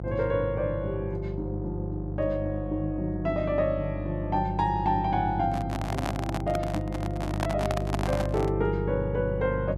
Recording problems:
mains hum; 50 Hz, harmonics up to 700 Hz, SNR 4 dB
microphone handling noise; from 5.5 to 8.5 s; peak +3 dB vs average level

